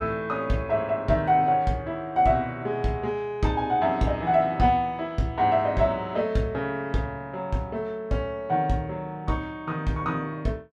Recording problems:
none

